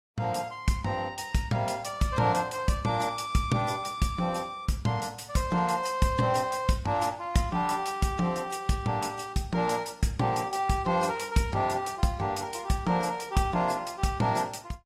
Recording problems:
lossy compression; AAC, log-spectral distance 3 dB, nothing above 13.5 kHz

